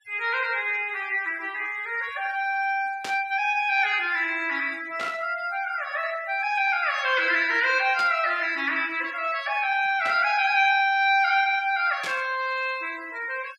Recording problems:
noise reduction artefacts; signal-to-artefact ratio 20 dB
burst of static; 5 times, first at 3 s; peak -6 dB vs average level

